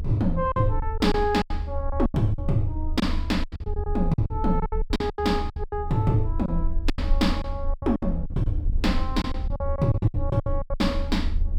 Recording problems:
rumble; below 76 Hz, strongest tone 24 Hz, SNR 5 dB
wind on the microphone; below 140 Hz, SNR 15 dB
lost packets; 16% of the sound replaced, filled with silence

